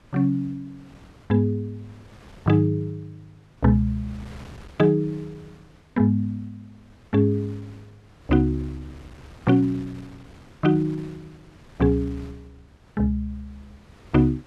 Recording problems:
wind on the microphone; below 990 Hz, SNR 25 dB

